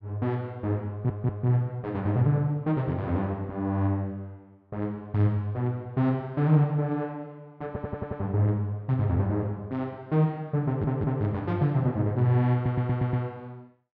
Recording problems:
stutter; 4 times, first at 1 s

